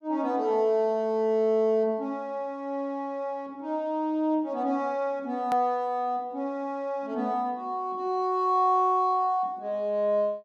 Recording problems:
hard cut with a click; at 5.5 s

